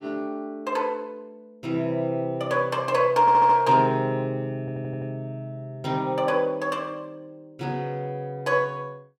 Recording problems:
audio stuttering; at 3 s and at 4.5 s

